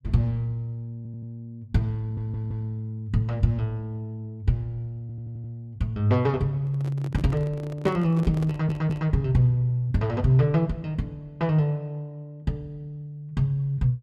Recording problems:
stutter; 4 times, first at 1 s
microphone handling noise; from 6.5 to 9 s; peak -4 dB vs average level

